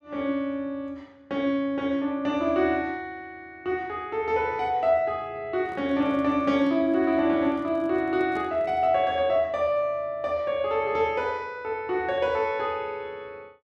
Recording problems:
microphone handling noise; from 5.5 to 9 s; peak -13 dB vs average level

